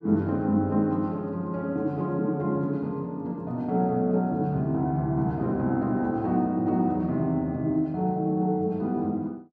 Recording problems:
none

